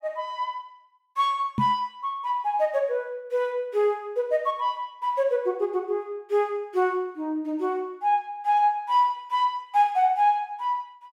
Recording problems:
knock on the microphone; at 1.5 s; peak +3 dB vs average level

